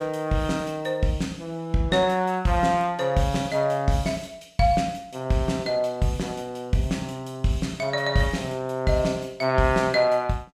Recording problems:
none

